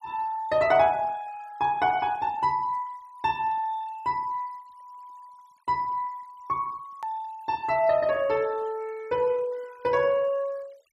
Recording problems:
denoising artefacts; signal-to-artefact ratio 25 dB
edit click; at 7 s

